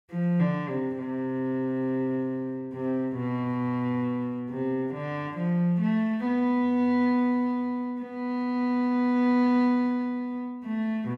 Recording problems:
none

